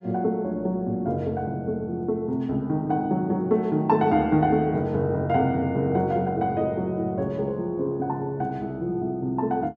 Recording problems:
none

